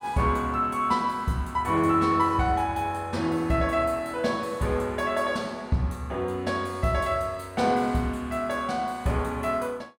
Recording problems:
none

